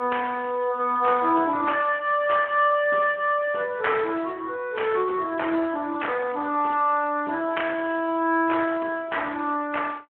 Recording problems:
telephone audio; 260 Hz to 3.1 kHz, Speex

